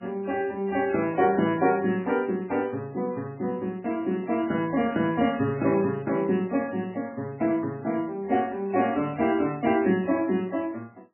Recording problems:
codec artefacts; MP3, log-spectral distance 3 dB, nothing above 2.9 kHz
burst of static; at 10 s; peak -12 dB vs average level

